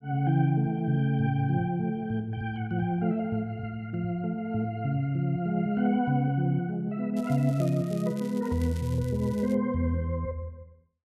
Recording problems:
crackling; from 7 to 9.5 s; loose cable, SNR 23 dB

